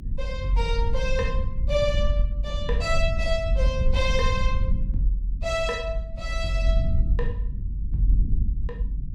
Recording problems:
low-frequency rumble; below 66 Hz, SNR 0 dB

